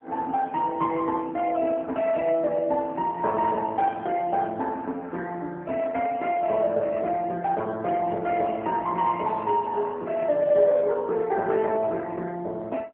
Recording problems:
telephone audio; 240 Hz to 3.6 kHz, AMR-NB

